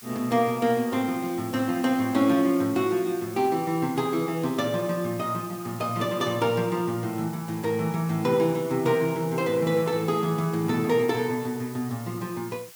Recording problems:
background hiss; slope +2 dB per octave, SNR 18 dB

